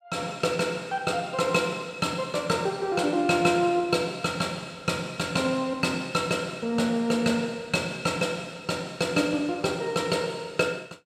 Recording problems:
none

